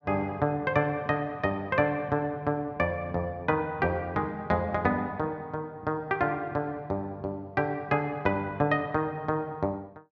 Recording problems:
none

